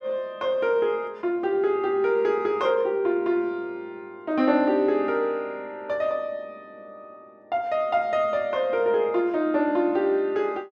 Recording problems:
none

